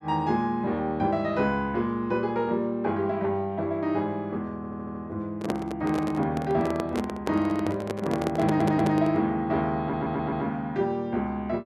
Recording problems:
audio stuttering; at 4.5 s, at 8.5 s and at 10 s
microphone handling noise; from 5.5 to 9 s; peak +2 dB vs average level

